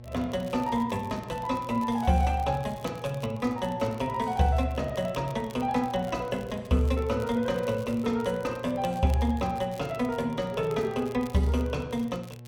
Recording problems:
electrical hum; 60 Hz, harmonics up to 1.1 kHz, SNR 17 dB
crackle; vinyl, SNR 24 dB

